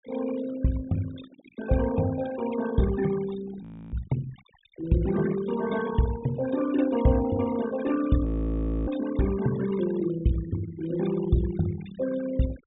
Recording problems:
low-pass filter; nothing above 4 kHz
denoising artefacts; signal-to-artefact ratio 14 dB
frozen audio; at 3.5 s and at 8.5 s for 0.5 s

